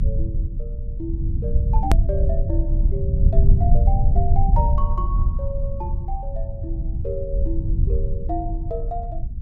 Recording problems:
low-frequency rumble; below 76 Hz, SNR -9 dB
edit click; at 2 s

